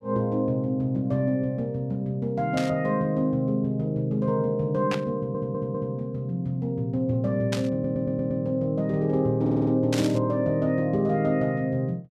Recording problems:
burst of static; 4 times, first at 2.5 s; peak -2 dB vs average level
stutter; at 5 s, at 7.5 s and at 9.5 s

